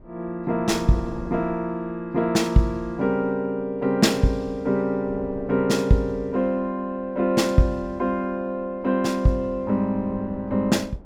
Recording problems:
wind noise; below 410 Hz, SNR 21 dB

